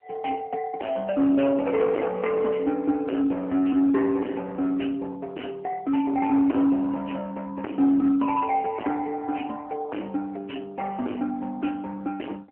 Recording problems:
telephone audio; 220 Hz to 3 kHz, AMR-NB
distortion; hard clipping, signal-to-distortion ratio 4 dB

